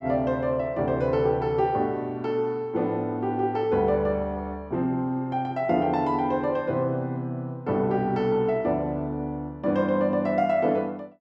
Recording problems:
none

